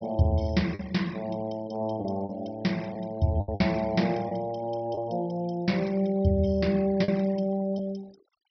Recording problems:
treble missing; nothing above 5.5 kHz
denoising artefacts; signal-to-artefact ratio 23 dB
packet loss; 4% of the sound replaced, filled with the last packet

